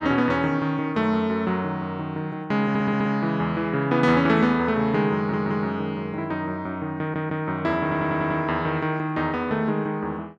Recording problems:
audio stuttering; 4 times, first at 2.5 s

